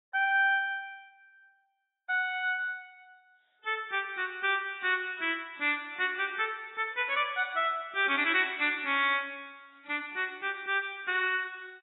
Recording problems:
lossy codec; AAC, log-spectral distance 4 dB, nothing above 3.7 kHz

